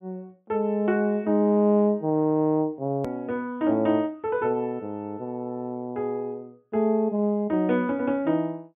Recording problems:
treble cut off; nothing above 3.5 kHz
hard cut with a click; at 3 s

